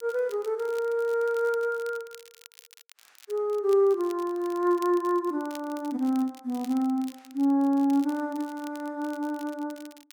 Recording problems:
crackle; vinyl, SNR 23 dB

